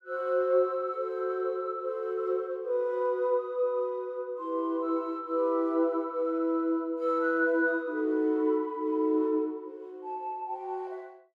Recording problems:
none

